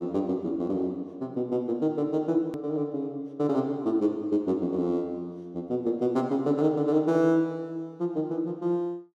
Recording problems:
click at an edit; at 2.5 s

